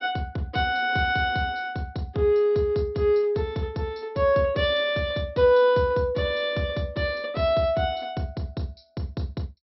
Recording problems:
treble missing; nothing above 5.6 kHz

